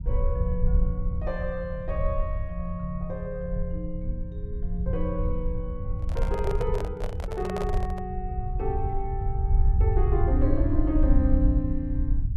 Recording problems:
low-frequency rumble; below 72 Hz, SNR -3 dB
handling noise; from 6 to 8 s; peak +1 dB vs average level

